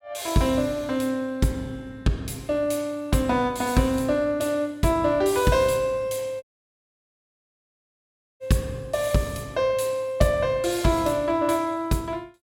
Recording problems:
audio cutting out; at 6.5 s for 2 s

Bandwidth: 16 kHz